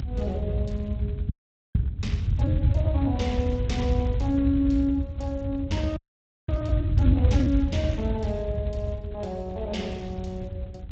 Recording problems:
codec artefacts; Speex, log-spectral distance 2 dB, nothing above 7.3 kHz
hum; 50 Hz, harmonics up to 1.2 kHz, SNR 24 dB
low-frequency rumble; below 110 Hz, SNR -2 dB
frozen audio; at 1.5 s and at 6 s for 0.5 s

